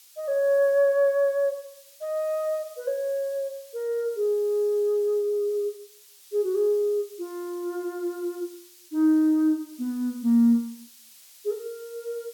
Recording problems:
hiss; slope +4 dB per octave, SNR 24 dB

